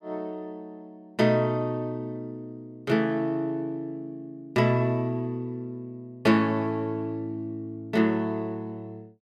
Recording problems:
none

